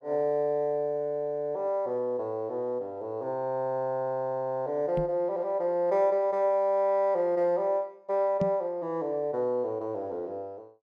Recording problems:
knock on the microphone; at 5 s and at 8.5 s; peak +2 dB vs average level

